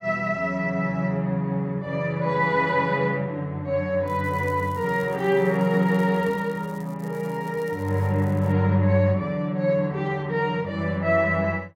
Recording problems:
crackling; from 4 to 8.5 s; loose cable, SNR 28 dB

